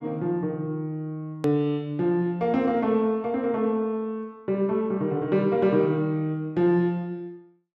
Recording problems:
edit click; at 1.5 s

